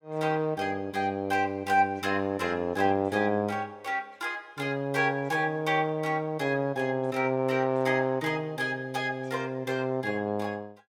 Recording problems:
none

